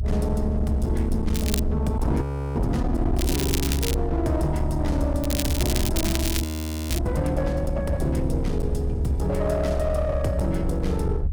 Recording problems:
distortion; hard clipping, uneven, signal-to-distortion ratio 10 dB
rumble; below 74 Hz, strongest tone 68 Hz, SNR 1 dB
crackling; at 1.5 s, at 3 s and from 5 to 7 s; loose cable, SNR 4 dB
audio freezing; at 2 s and at 6.5 s

